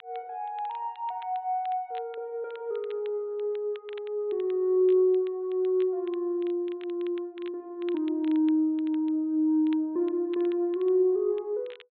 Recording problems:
low-pass filter; nothing above 4 kHz
crackling; vinyl, SNR 27 dB

